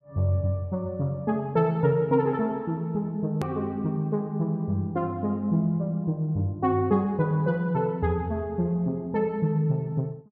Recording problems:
edit click; at 3.5 s

